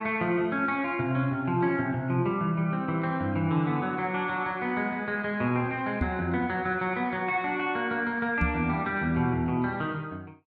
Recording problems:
microphone bump; at 6 s and at 8.5 s; peak +4 dB vs average level

